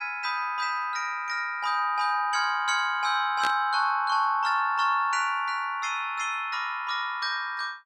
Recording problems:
static burst; at 3.5 s; peak -2 dB vs average level

